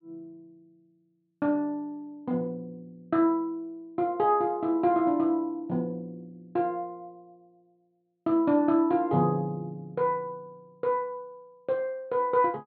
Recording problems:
low-pass filter; nothing above 4.4 kHz

